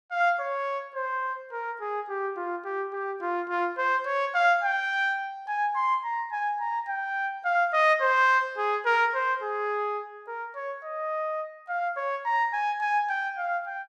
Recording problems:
none

